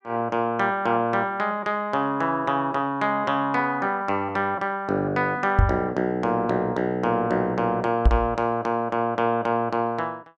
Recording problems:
microphone bump; at 5.5 s and at 8 s; peak +8 dB vs average level

